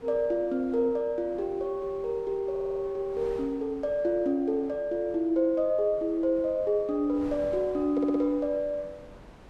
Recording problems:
wind on the microphone; below 770 Hz, SNR 21 dB
stutter; at 2.5 s and at 8 s

